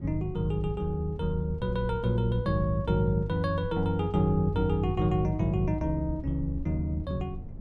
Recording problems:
rumble; below 140 Hz, SNR 14 dB

